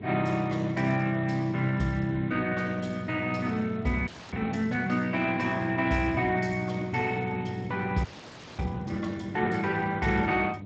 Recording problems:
codec artefacts; Speex, log-spectral distance 5 dB
hum; 50 Hz, harmonics up to 900 Hz, SNR 14 dB
wind noise; below 330 Hz, SNR 19 dB
frozen audio; at 4 s and at 8 s for 0.5 s

